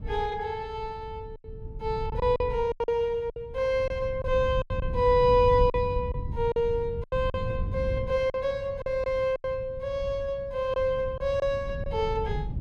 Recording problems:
wind on the microphone; below 110 Hz, SNR 9 dB
packet loss; 8% of the sound replaced, filled with silence

